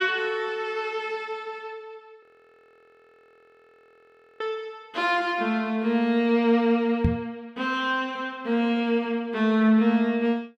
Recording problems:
audio freezing; at 2 s for 2 s
knock on the microphone; at 7 s; peak +5 dB vs average level

